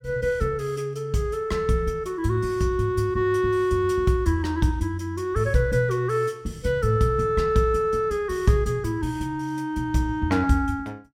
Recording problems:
none

